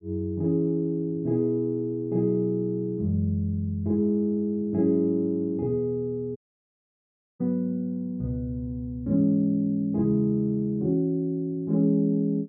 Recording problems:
dropout; at 6.5 s for 1 s

